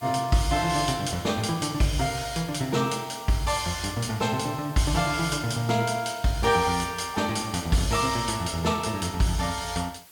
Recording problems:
background hiss; slope 0 dB per octave, SNR 21 dB

